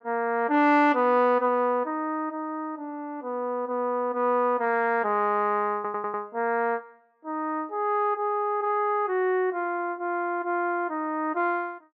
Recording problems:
audio stuttering; at 6 s

